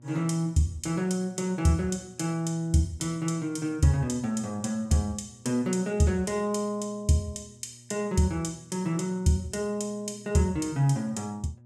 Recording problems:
electrical hum; 60 Hz, harmonics up to 600 Hz, SNR 25 dB

